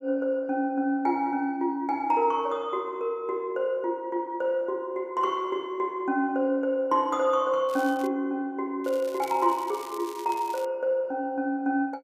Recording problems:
crackle; at 7.5 s and from 9 to 11 s; loose cable, SNR 20 dB

